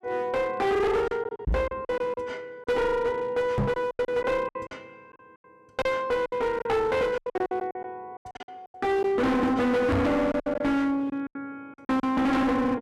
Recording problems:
distorted audio; hard clipping, uneven, signal-to-distortion ratio 6 dB
packet loss; 12% of the sound replaced, filled with silence
microphone bump; at 1.5 s, at 3.5 s and at 10 s; peak +6 dB vs average level

